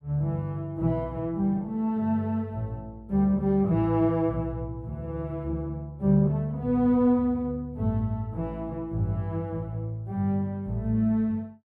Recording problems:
none

